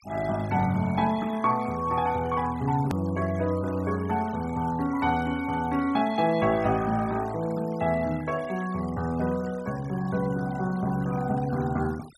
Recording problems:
noise reduction artefacts; signal-to-artefact ratio 20 dB
click at an edit; at 3 s

